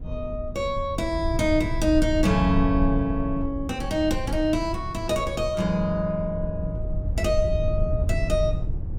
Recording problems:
rumble; below 96 Hz, SNR 5 dB

